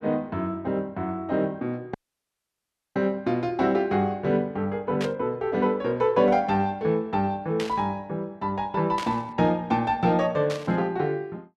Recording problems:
audio cutting out; at 2 s for 1 s
static burst; 4 times, first at 5 s; peak -4 dB vs average level

